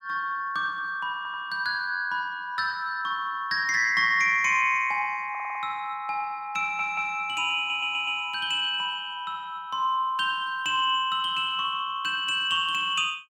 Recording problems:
stutter; 4 times, first at 1 s

